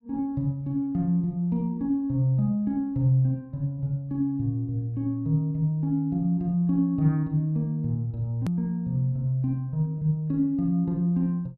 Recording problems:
click at an edit; at 8.5 s

